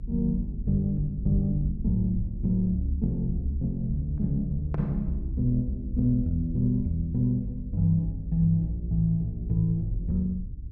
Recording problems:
rumble; below 64 Hz, strongest tone 40 Hz, SNR 10 dB

